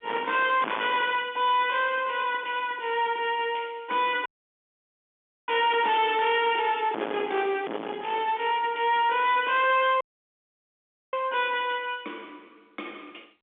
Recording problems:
phone line; 240 Hz to 3.6 kHz, G.711
distorted audio; hard clipping, uneven, signal-to-distortion ratio 3 dB
audio cutting out; at 4.5 s for 1 s and at 10 s for 1 s

